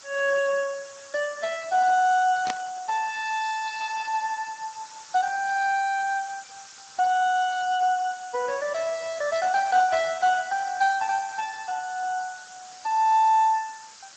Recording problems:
lossy codec; Speex, log-spectral distance 14 dB
background hiss; SNR 19 dB
static burst; at 2.5 s; peak -1 dB vs average level

